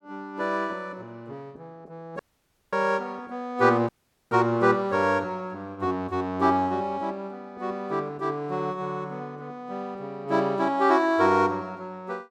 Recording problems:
dropout; at 2 s for 0.5 s and at 4 s

